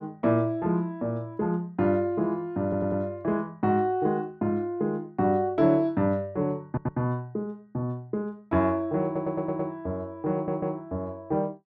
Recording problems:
audio stuttering; 4 times, first at 2.5 s

